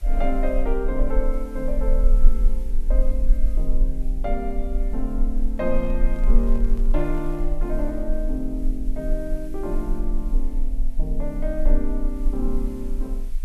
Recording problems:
background hiss; slope -1 dB per octave, SNR 25 dB
low-frequency rumble; below 34 Hz, strongest tone 22 Hz, SNR -3 dB
handling noise; from 5.5 to 7.5 s; peak -11 dB vs average level

